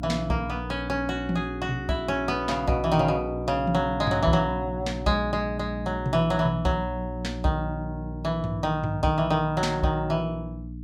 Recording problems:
hum; 60 Hz, harmonics up to 300 Hz, SNR 9 dB

